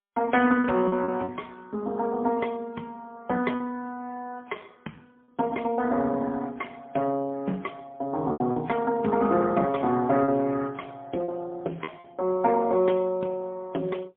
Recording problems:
telephone audio; 260 Hz to 3.3 kHz, AMR-NB, then MP3
lost packets; 4% of the sound replaced, filled with repeated pitch periods

